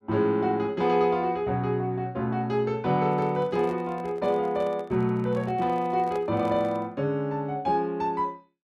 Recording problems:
handling noise; from 3 to 7 s; peak -9 dB vs average level

